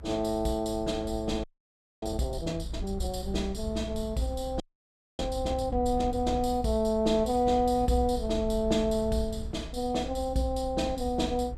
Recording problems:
low-frequency rumble; below 72 Hz, SNR 10 dB
audio freezing; at 1.5 s for 0.5 s and at 4.5 s for 0.5 s

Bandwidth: 14.5 kHz